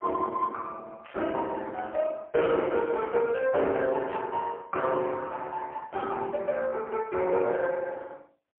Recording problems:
telephone audio; 320 Hz to 3.4 kHz, AMR-NB, then MP3
burst of static; at 1 s, at 4 s and at 6 s; peak -13 dB vs average level

